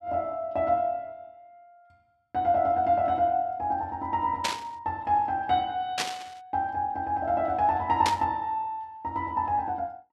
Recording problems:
static burst; at 4.5 s, at 6 s and at 8 s; peak +4 dB vs average level

